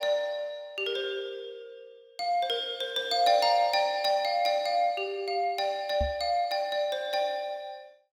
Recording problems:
microphone bump; at 6 s; peak -1 dB vs average level

